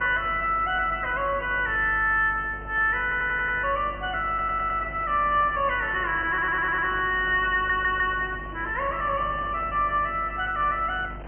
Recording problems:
treble cut off; nothing above 3.1 kHz
hum; 50 Hz, harmonics up to 350 Hz, SNR 18 dB
wind on the microphone; below 1 kHz, SNR 19 dB
stutter; 4 times, first at 3 s

